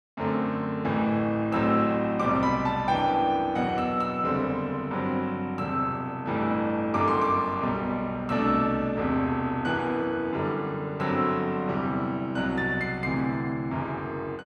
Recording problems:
none

